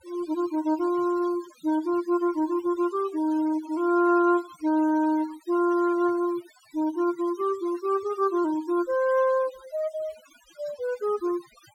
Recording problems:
denoising artefacts; signal-to-artefact ratio 22 dB

